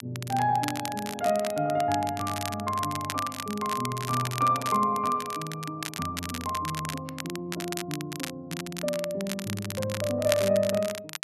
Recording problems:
crackling; vinyl, SNR 8 dB

